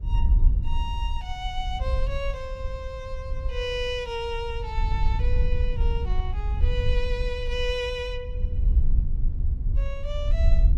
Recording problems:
wind noise; below 64 Hz, SNR -5 dB

